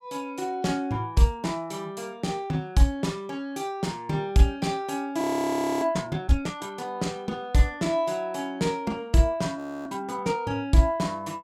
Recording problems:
frozen audio; at 5 s for 0.5 s and at 9.5 s

